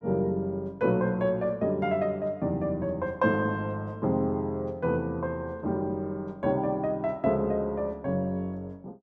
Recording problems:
none

